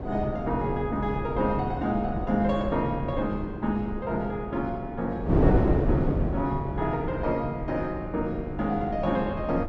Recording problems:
wind on the microphone; below 390 Hz, SNR 2 dB

